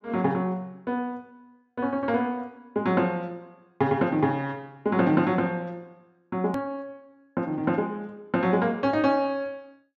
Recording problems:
low-pass filter; nothing above 7.5 kHz
edit click; at 6.5 s

